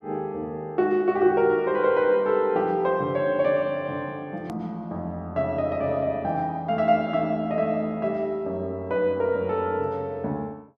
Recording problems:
hard cut with a click; at 4.5 s

